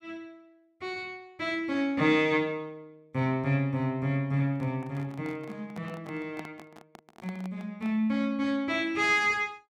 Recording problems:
microphone handling noise; from 4.5 to 8 s; peak -10 dB vs average level

